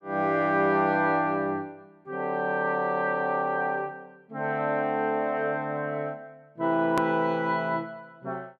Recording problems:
click at an edit; at 7 s

